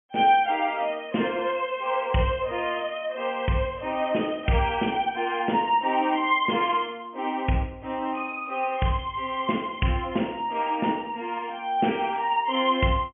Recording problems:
treble cut off; nothing above 3.2 kHz

